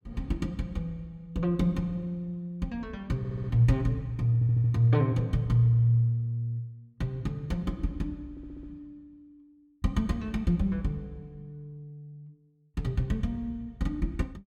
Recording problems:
stutter; at 3 s, at 4.5 s and at 8.5 s

